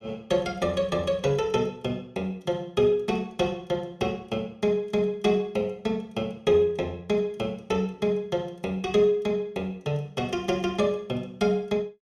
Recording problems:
none

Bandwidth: 14.5 kHz